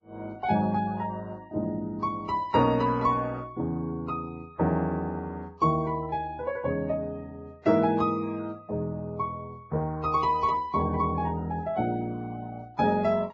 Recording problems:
lossy compression; Vorbis, log-spectral distance 2 dB, nothing above 7.3 kHz

